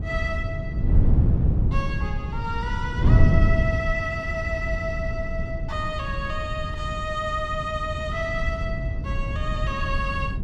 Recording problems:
wind on the microphone; below 120 Hz, SNR -3 dB

